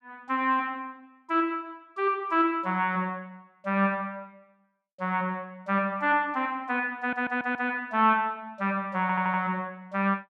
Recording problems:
stutter; at 7 s and at 9 s

